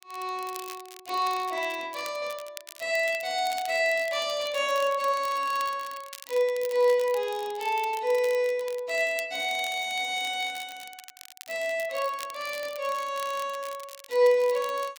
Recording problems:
crackle; vinyl, SNR 17 dB

